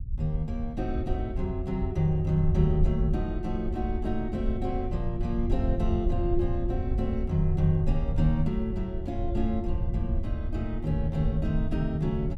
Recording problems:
low-frequency rumble; below 76 Hz, SNR 3 dB

